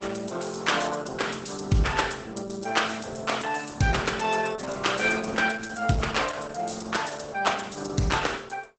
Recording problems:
lossy compression; Opus, log-spectral distance 7 dB, nothing above 8 kHz

